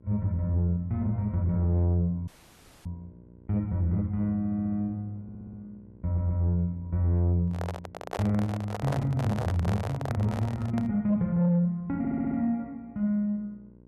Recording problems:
distortion; soft clipping, signal-to-distortion ratio 11 dB
electrical hum; 60 Hz, harmonics up to 1 kHz, SNR 26 dB
dropout; at 2.5 s for 0.5 s
audio stuttering; 4 times, first at 4.5 s
microphone handling noise; from 7.5 to 11 s; peak -1 dB vs average level

